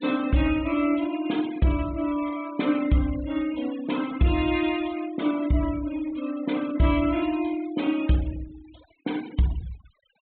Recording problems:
treble missing; nothing above 4 kHz
noise reduction artefacts; signal-to-artefact ratio 17 dB

